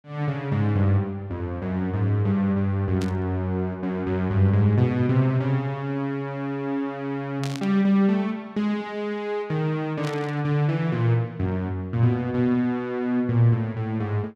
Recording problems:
burst of static; at 3 s, at 7.5 s and at 10 s; peak -8 dB vs average level

